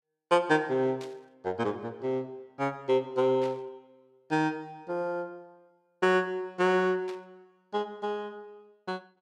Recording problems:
static burst; at 1 s, at 3.5 s and at 7 s; peak -12 dB vs average level

